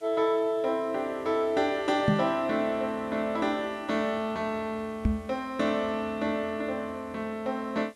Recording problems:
background hiss; slope -1 dB per octave, SNR 29 dB
microphone bump; at 2 s and at 5 s; peak +8 dB vs average level

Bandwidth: 12.5 kHz